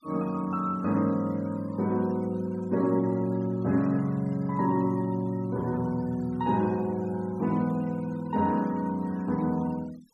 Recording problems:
denoising artefacts; signal-to-artefact ratio 24 dB

